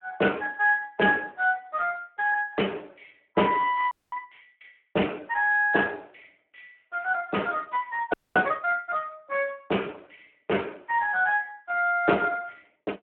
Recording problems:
telephone audio; 240 Hz to 3.2 kHz, Speex
frozen audio; at 4 s and at 8 s

